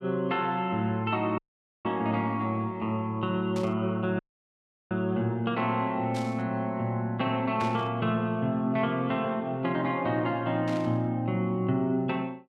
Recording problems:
audio cutting out; at 1.5 s and at 4 s for 0.5 s
burst of static; 4 times, first at 3.5 s; peak -7 dB vs average level

